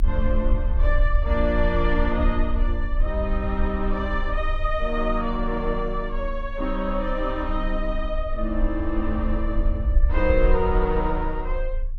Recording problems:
rumble; below 54 Hz, strongest tone 28 Hz, SNR 1 dB

